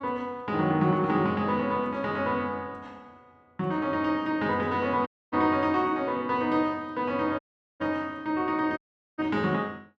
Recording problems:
dropout; at 5 s, at 7.5 s and at 9 s

